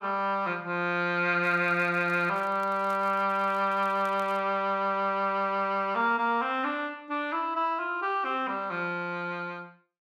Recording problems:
crackle; from 1.5 to 2.5 s and from 2.5 to 4.5 s; loose cable, SNR 28 dB

